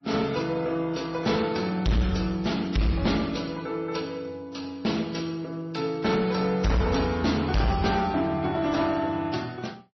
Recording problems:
lossy codec; MP3, then AAC, log-spectral distance 5 dB, nothing above 5.8 kHz
distortion; hard clipping, uneven, signal-to-distortion ratio 7 dB

